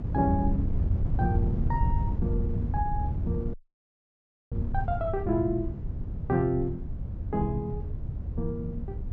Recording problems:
low-pass filter; nothing above 7.8 kHz
wind on the microphone; below 120 Hz, SNR 0 dB
audio cutting out; at 3.5 s for 1 s

